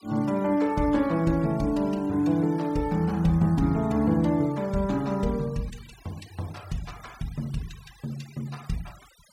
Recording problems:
noise reduction artefacts; signal-to-artefact ratio 24 dB

